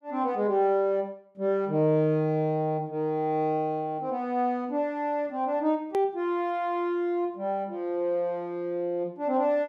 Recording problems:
edit click; at 6 s

